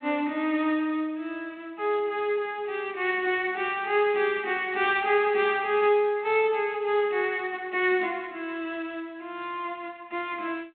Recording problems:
phone line; 170 Hz to 3.8 kHz, G.726

